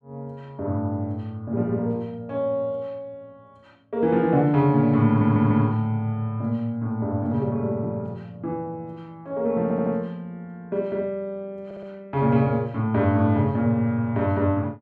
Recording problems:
audio stuttering; at 5 s, at 9.5 s and at 12 s

